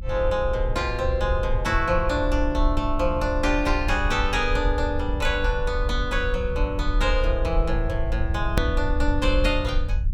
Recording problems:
low-frequency rumble; below 66 Hz, SNR 3 dB
hard cut with a click; at 8.5 s

